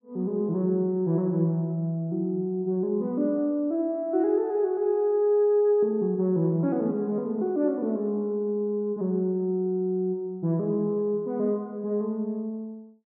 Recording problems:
none

